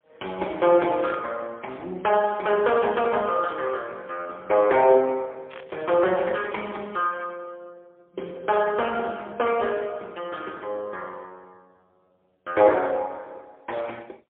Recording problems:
phone line; 320 Hz to 3.6 kHz, AMR-NB, then MP3
static burst; at 1 s and at 5.5 s; peak -13 dB vs average level

